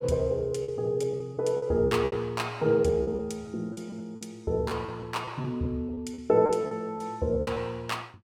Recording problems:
lost packets; 11% of the sound replaced, filled with repeated pitch periods

